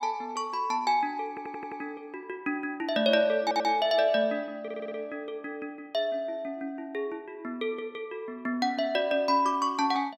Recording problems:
audio stuttering; at 1.5 s, at 3.5 s and at 4.5 s

